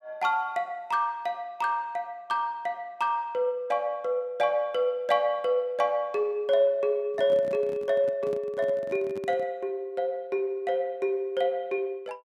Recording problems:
handling noise; from 7 to 9.5 s; peak -10 dB vs average level

